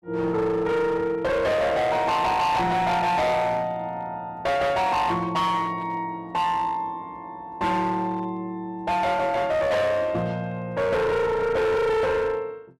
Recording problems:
distortion; hard clipping, uneven, signal-to-distortion ratio 7 dB

